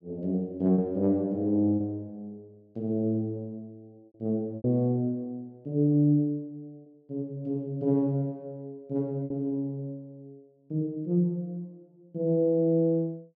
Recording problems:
packet loss; 1.9% of the sound replaced, filled with repeated pitch periods

